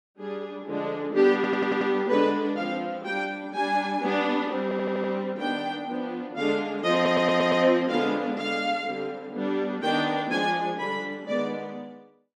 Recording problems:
stutter; at 1.5 s, at 4.5 s and at 7 s

